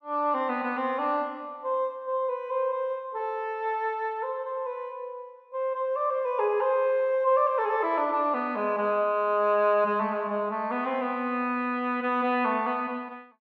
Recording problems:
none

